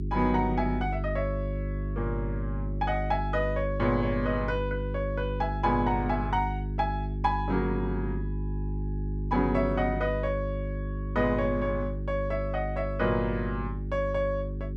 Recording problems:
electrical hum; 50 Hz, harmonics up to 400 Hz, SNR 3 dB

